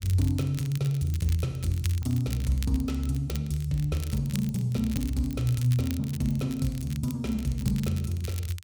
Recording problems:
crackling; vinyl, SNR 16 dB

